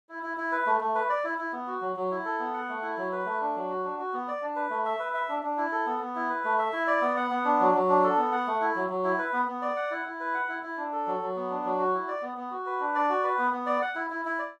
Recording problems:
none

